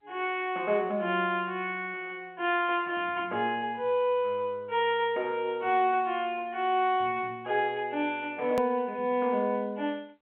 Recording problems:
phone line; 220 Hz to 3.5 kHz, G.711
click at an edit; at 8.5 s

